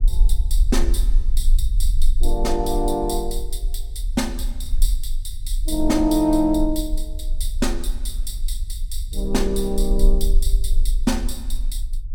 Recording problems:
low-frequency rumble; below 38 Hz, strongest tone 20 Hz, SNR 0 dB

